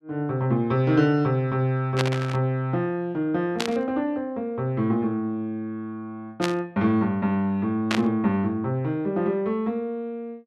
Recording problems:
static burst; 4 times, first at 2 s; peak +3 dB vs average level

